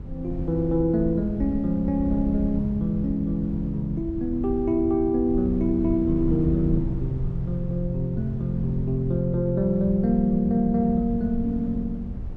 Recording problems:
low-frequency rumble; below 120 Hz, SNR 10 dB
wind on the microphone; below 120 Hz, SNR 17 dB

